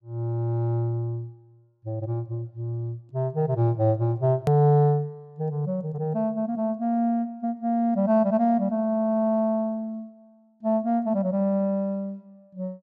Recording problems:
click at an edit; at 4.5 s

